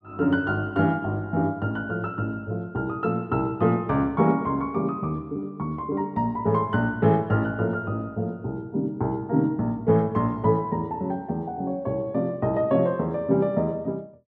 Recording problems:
none

